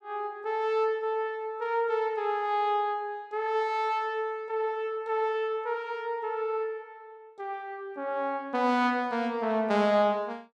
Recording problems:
none

